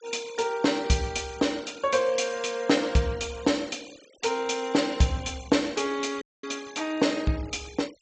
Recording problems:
low-pass filter; nothing above 8 kHz
noise reduction artefacts; signal-to-artefact ratio 21 dB
audio cutting out; at 6 s

